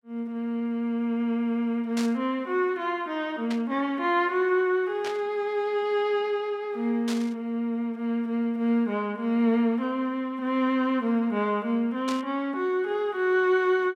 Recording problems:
burst of static; 5 times, first at 2 s; peak -5 dB vs average level

